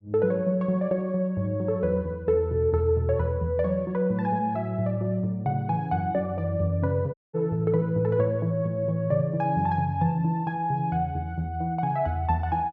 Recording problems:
dropout; at 7 s

